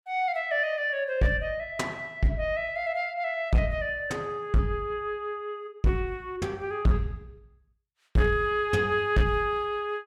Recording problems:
distorted audio; hard clipping, signal-to-distortion ratio 12 dB

